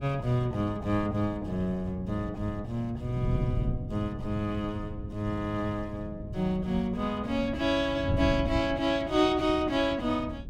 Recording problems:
wind on the microphone; below 160 Hz, SNR 8 dB

